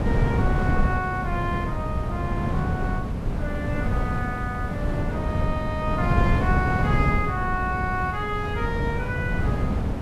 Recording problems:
background hiss; SNR 21 dB
wind on the microphone; below 210 Hz, SNR -3 dB

